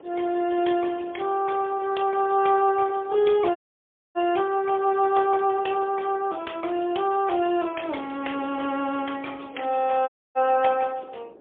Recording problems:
telephone audio; 260 Hz to 3.4 kHz, AMR-NB, then MP3
wind noise; below 580 Hz, SNR 23 dB
dropout; at 3.5 s for 0.5 s and at 10 s

